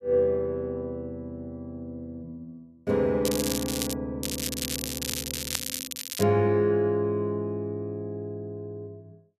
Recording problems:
crackle; at 3.5 s and from 4 to 6 s; loose cable, SNR 3 dB

